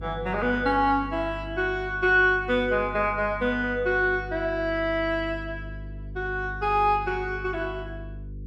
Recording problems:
electrical hum; 50 Hz, harmonics up to 450 Hz, SNR 14 dB

